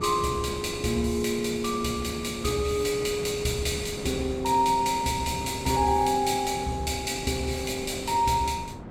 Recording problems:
wind on the microphone; below 470 Hz, SNR 12 dB

